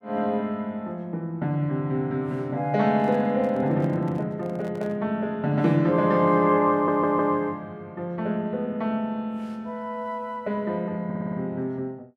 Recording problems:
microphone handling noise; from 3 to 5 s; peak -12 dB vs average level
stutter; at 6.5 s and at 11 s

